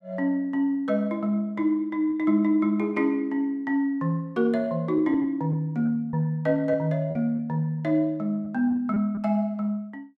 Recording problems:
lost packets; 3% of the sound replaced, filled with repeated pitch periods

